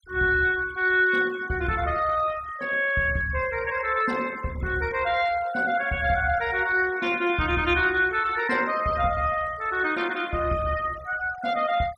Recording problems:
denoising artefacts; signal-to-artefact ratio 19 dB

